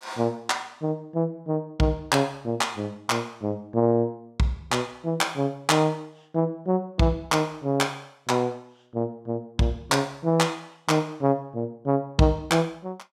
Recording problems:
none

